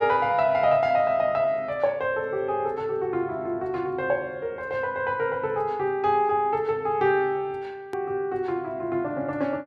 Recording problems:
hard cut with a click; at 8 s

